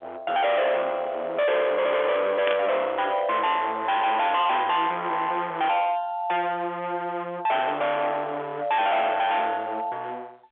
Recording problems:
telephone audio; 990 Hz to 3.5 kHz, G.711
distorted audio; hard clipping, uneven, signal-to-distortion ratio 6 dB
burst of static; at 2.5 s; peak -1 dB vs average level

